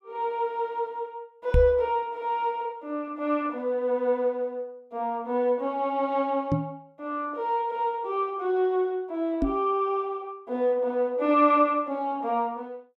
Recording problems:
microphone bump; at 1.5 s, at 6.5 s and at 9.5 s; peak +6 dB vs average level

